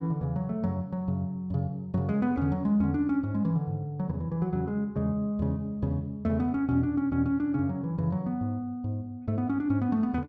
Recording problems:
none

